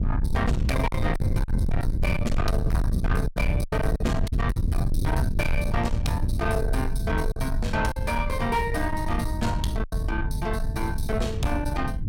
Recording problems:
distorted audio; soft clipping, signal-to-distortion ratio 7 dB
low-frequency rumble; below 120 Hz, SNR -1 dB
packet loss; 5% of the sound replaced, filled with silence

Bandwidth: 16.5 kHz